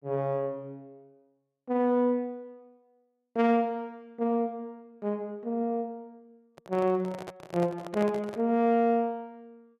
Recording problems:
microphone handling noise; from 6.5 to 8.5 s; peak -6 dB vs average level

